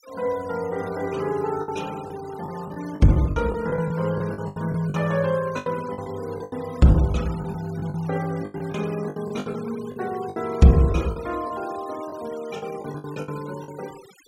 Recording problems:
denoising artefacts; signal-to-artefact ratio 20 dB
packet loss; 12% of the sound replaced, filled with the last packet

